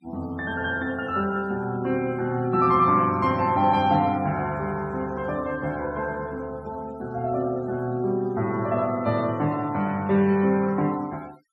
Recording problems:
noise reduction artefacts; signal-to-artefact ratio 23 dB

